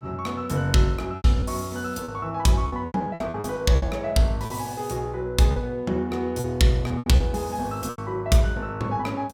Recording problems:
packet loss; 10% of the sound replaced, filled with repeated pitch periods

